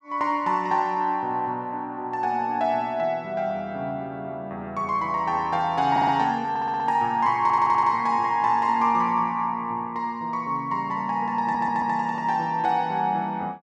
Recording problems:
stutter; 4 times, first at 6 s

